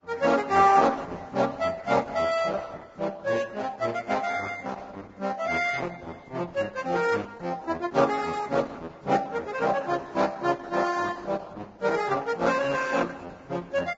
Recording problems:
codec artefacts; Opus, then Vorbis, log-spectral distance 4 dB, nothing above 7.6 kHz

